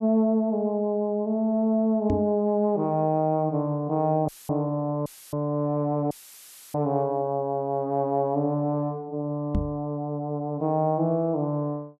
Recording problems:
knock on the microphone; at 2 s and at 9.5 s; peak +3 dB vs average level
audio cutting out; at 4.5 s, at 5 s and at 6 s for 0.5 s; filled with static

